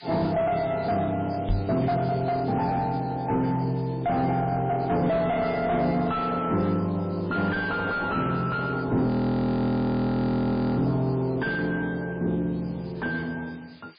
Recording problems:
lossy compression; MP3, log-spectral distance 11 dB, nothing above 4.5 kHz
distortion; soft clipping, signal-to-distortion ratio 7 dB
hiss; SNR 24 dB
microphone bump; at 1.5 s; peak +3 dB vs average level
audio freezing; at 9 s for 1.5 s

